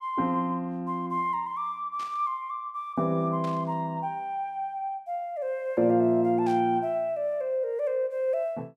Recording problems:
static burst; at 2 s, at 3.5 s and at 6.5 s; peak -13 dB vs average level

